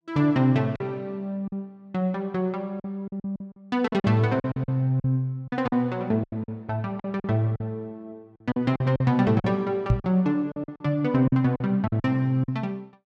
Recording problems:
packet loss; 11% of the sound replaced, filled with silence
knock on the microphone; at 10 s; peak +8 dB vs average level

